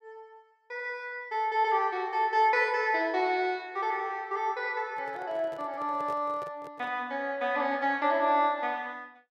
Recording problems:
handling noise; from 5 to 7 s; peak -12 dB vs average level

